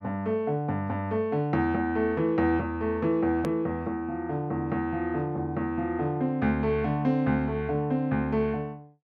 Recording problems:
hard cut with a click; at 3.5 s

